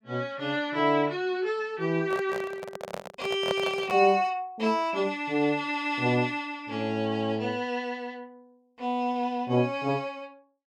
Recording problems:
microphone handling noise; from 2 to 4 s; peak +2 dB vs average level

